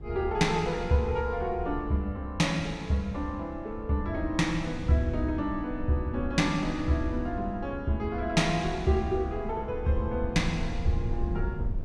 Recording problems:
low-frequency rumble; below 96 Hz, SNR 10 dB

